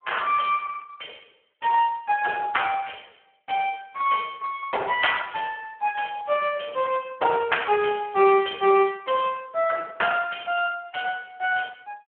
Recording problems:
telephone audio; 340 Hz to 3.2 kHz, Speex

